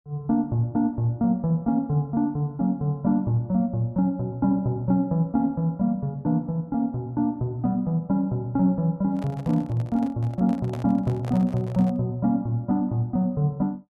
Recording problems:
microphone handling noise; from 9 to 12 s; peak -8 dB vs average level

